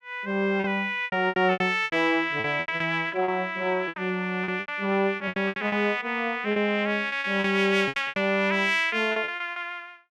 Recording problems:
lost packets; 16% of the sound replaced, filled with repeated pitch periods

